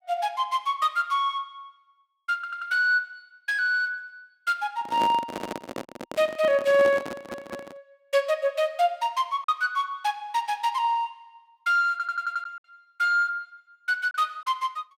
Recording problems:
lost packets; 1.6% of the sound replaced, filled with silence
stutter; 4 times, first at 2.5 s
handling noise; from 5 to 8 s; peak -1 dB vs average level

